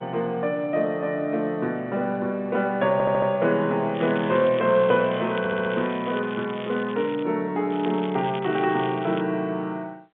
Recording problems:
phone line; 150 Hz to 4 kHz, G.711
audio stuttering; at 3 s and at 5.5 s
crackling; from 4 to 7 s and from 7.5 to 9 s; loose cable, SNR 18 dB

